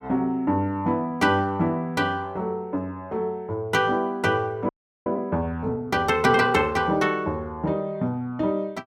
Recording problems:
audio freezing; at 4.5 s

